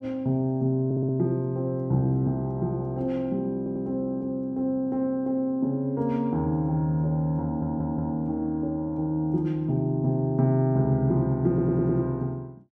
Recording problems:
audio stuttering; 4 times, first at 1 s

